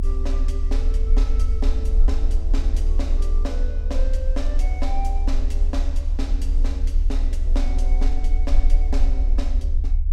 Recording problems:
hum; 50 Hz, harmonics up to 350 Hz, SNR 21 dB
low-frequency rumble; below 42 Hz, strongest tone 28 Hz, SNR -11 dB

